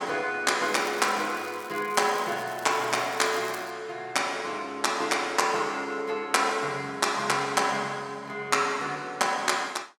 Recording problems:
crackling; from 0.5 to 3.5 s; loose cable, SNR 19 dB

